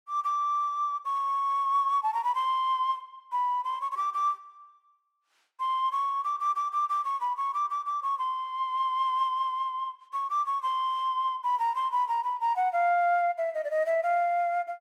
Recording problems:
none

